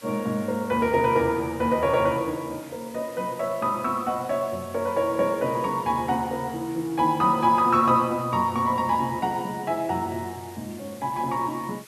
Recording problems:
background hiss; slope +1 dB per octave, SNR 22 dB

